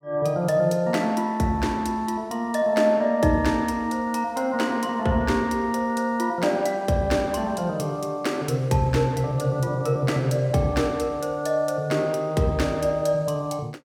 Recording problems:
none

